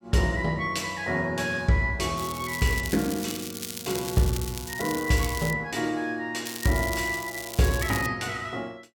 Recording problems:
crackling; from 2 to 5.5 s and from 6.5 to 8 s; loose cable, SNR 9 dB

